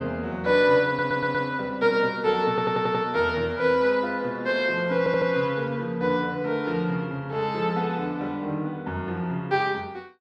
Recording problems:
audio stuttering; at 1 s, at 2.5 s and at 5 s

